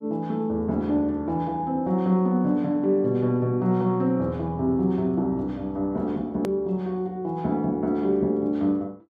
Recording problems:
edit click; at 6.5 s

